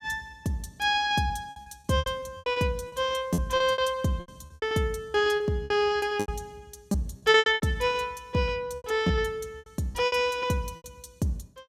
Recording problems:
lost packets; 14% of the sound replaced, filled with repeated pitch periods

